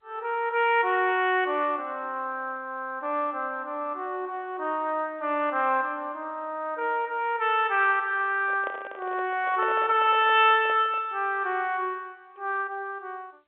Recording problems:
phone line; 280 Hz to 3.5 kHz, G.711
microphone handling noise; from 8.5 to 11 s; peak -6 dB vs average level

